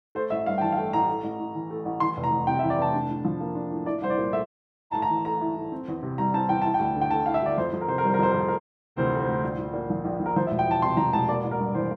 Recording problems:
audio cutting out; at 4.5 s and at 8.5 s

